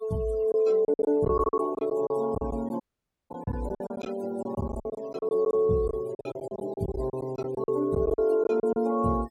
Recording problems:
denoising artefacts; signal-to-artefact ratio 22 dB
lost packets; 16% of the sound replaced, filled with silence
dropout; at 3 s for 0.5 s

